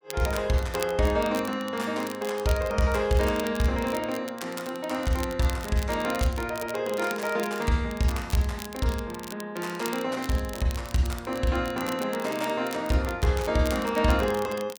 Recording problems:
crackling; vinyl, SNR 15 dB

